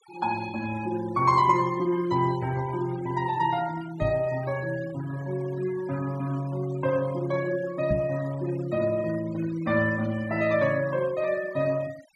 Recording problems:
noise reduction artefacts; signal-to-artefact ratio 19 dB
microphone thump; at 4 s and at 8 s; peak +3 dB vs average level

